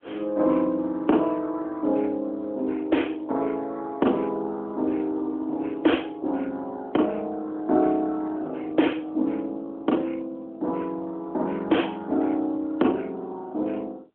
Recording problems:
telephone audio; 220 Hz to 3.3 kHz, AMR-NB

